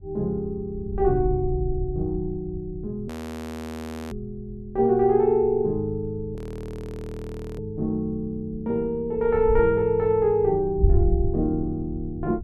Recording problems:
wind noise; below 78 Hz, SNR 8 dB
frozen audio; at 3 s for 1 s and at 6.5 s for 1 s

